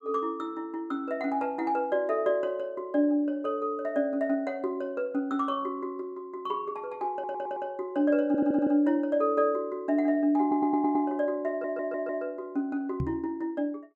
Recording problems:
stutter; 4 times, first at 7 s
microphone thump; at 13 s; peak +2 dB vs average level

